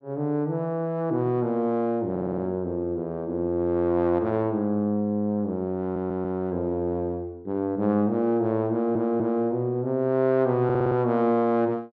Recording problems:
stutter; 4 times, first at 2 s

